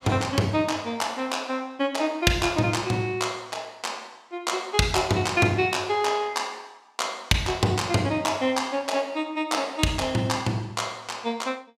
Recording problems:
none

